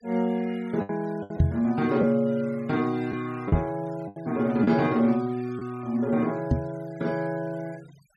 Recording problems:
denoising artefacts; signal-to-artefact ratio 25 dB
packet loss; 4% of the sound replaced, filled with the last packet
microphone thump; at 1.5 s, at 3.5 s and at 6.5 s; peak +9 dB vs average level

